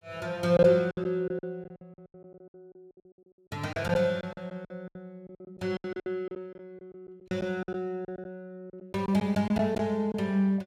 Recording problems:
lost packets; 15% of the sound replaced, filled with silence

